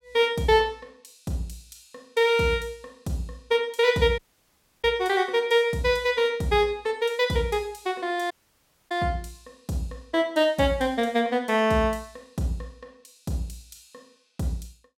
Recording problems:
audio cutting out; at 4 s for 0.5 s and at 8.5 s for 0.5 s

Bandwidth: 16.5 kHz